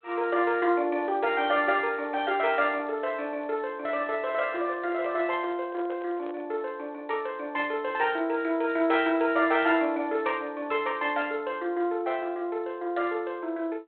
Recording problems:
phone line; 300 Hz to 3.5 kHz, G.726
handling noise; from 4 to 6.5 s; peak -9 dB vs average level

